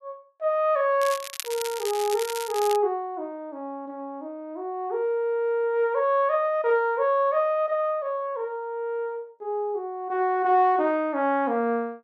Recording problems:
crackle; from 1 to 3 s; loose cable, SNR 10 dB

